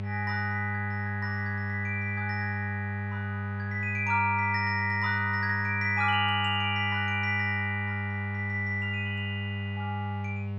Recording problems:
electrical hum; 50 Hz, harmonics up to 800 Hz, SNR 4 dB

